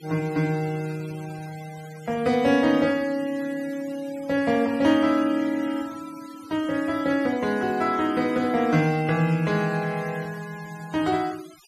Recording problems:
denoising artefacts; signal-to-artefact ratio 21 dB

